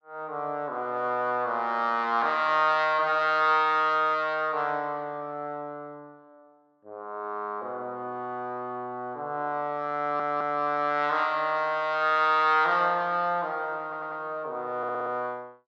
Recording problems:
audio stuttering; at 10 s, at 14 s and at 15 s

